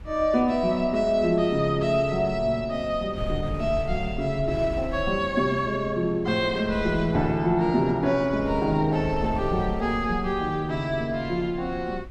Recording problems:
wind on the microphone; below 92 Hz, SNR 14 dB

